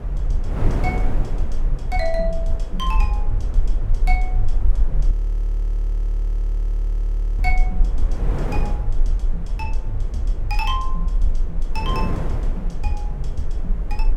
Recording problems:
low-frequency rumble; below 40 Hz, SNR -5 dB
wind noise; below 460 Hz, SNR 3 dB
frozen audio; at 5 s for 2.5 s

